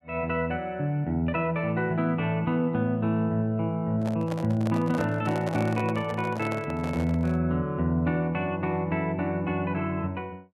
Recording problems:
microphone handling noise; from 4 to 7.5 s; peak -3 dB vs average level

